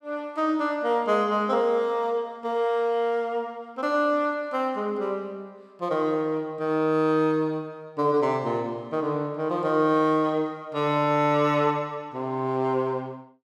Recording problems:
none

